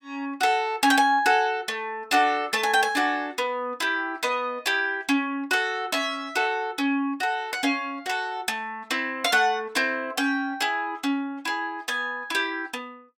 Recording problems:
none

